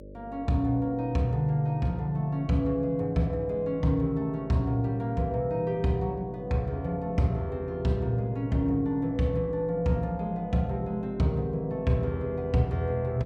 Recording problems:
electrical hum; 50 Hz, harmonics up to 600 Hz, SNR 18 dB

